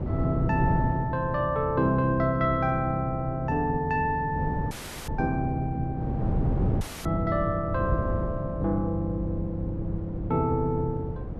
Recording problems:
wind on the microphone; below 230 Hz, SNR 5 dB
dropout; at 4.5 s and at 7 s

